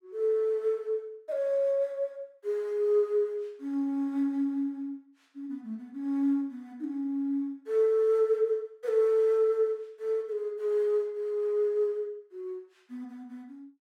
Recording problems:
none

